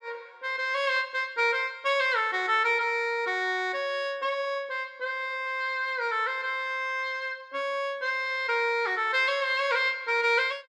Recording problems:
none

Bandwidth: 14.5 kHz